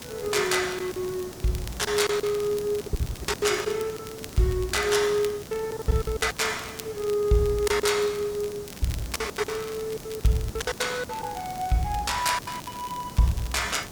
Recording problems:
hiss; SNR 14 dB
crackling; vinyl, SNR 18 dB
packet loss; 12% of the sound replaced, filled with silence

